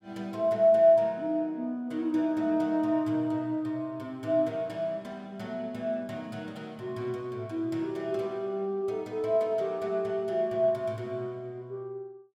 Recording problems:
none

